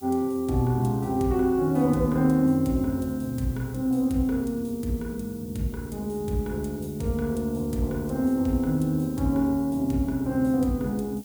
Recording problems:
hiss; SNR 22 dB

